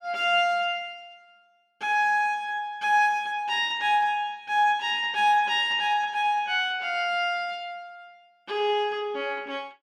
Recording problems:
none

